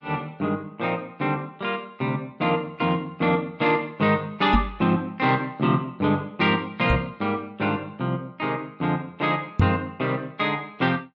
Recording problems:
low-pass filter; nothing above 8 kHz
lossy compression; MP3, then MP3, log-spectral distance 2 dB
microphone thump; at 4.5 s, at 7 s and at 9.5 s; peak +8 dB vs average level

